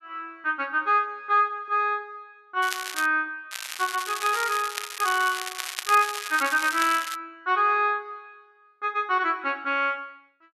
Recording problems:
crackling; at 2.5 s and from 3.5 to 7 s; loose cable, SNR 8 dB

